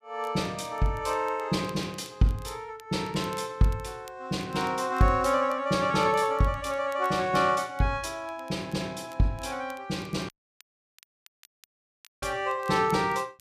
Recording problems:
crackle; vinyl, SNR 27 dB
audio cutting out; at 10 s for 2 s

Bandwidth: 14.5 kHz